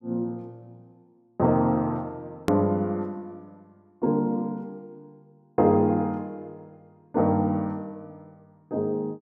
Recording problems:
hard cut with a click; at 2.5 s

